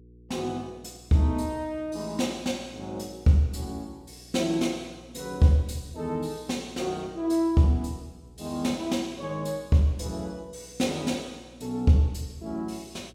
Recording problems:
electrical hum; 60 Hz, harmonics up to 480 Hz, SNR 25 dB

